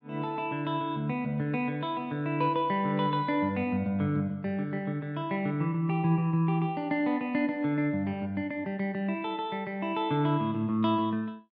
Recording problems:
treble missing; nothing above 7.9 kHz

